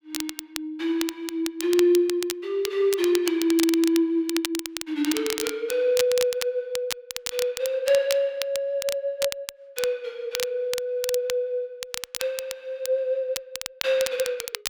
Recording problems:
crackle; vinyl, SNR 8 dB

